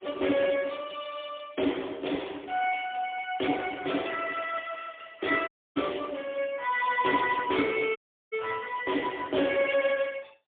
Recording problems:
phone line; 220 Hz to 3.4 kHz, AMR-NB, then MP3
dropout; at 5.5 s and at 8 s

